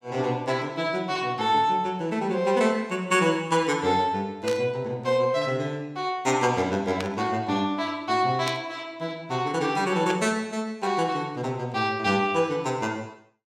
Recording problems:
static burst; 4 times, first at 4.5 s; peak -3 dB vs average level

